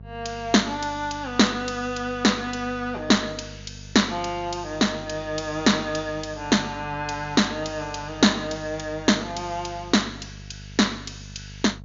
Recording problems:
low-pass filter; nothing above 7.1 kHz
electrical hum; 50 Hz, harmonics up to 700 Hz, SNR 18 dB

